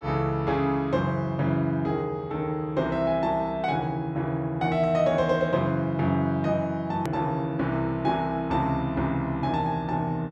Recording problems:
edit click; at 7 s

